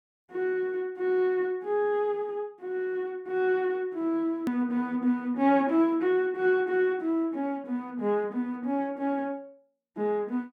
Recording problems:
edit click; at 4.5 s

